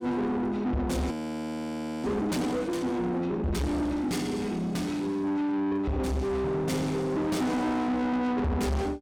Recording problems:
distortion; soft clipping, signal-to-distortion ratio 7 dB
frozen audio; at 1 s for 1 s

